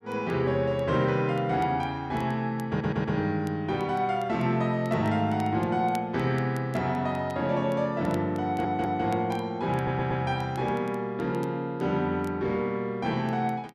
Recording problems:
crackle; vinyl, SNR 28 dB
stutter; at 2.5 s, at 8.5 s and at 10 s

